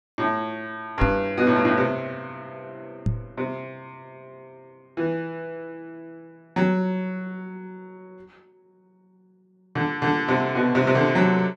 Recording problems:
microphone thump; at 1 s and at 3 s; peak +5 dB vs average level

